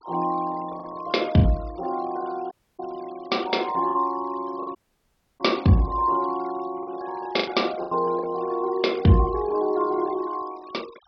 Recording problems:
treble cut off; nothing above 5.5 kHz
denoising artefacts; signal-to-artefact ratio 23 dB
packet loss; 4% of the sound replaced, filled with the last packet
dropout; at 2.5 s and at 5 s for 0.5 s

